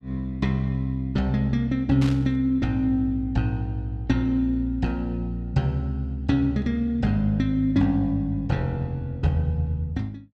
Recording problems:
burst of static; at 2 s; peak -7 dB vs average level

